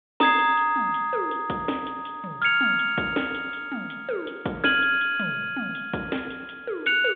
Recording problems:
phone line; 190 Hz to 3.6 kHz, G.726

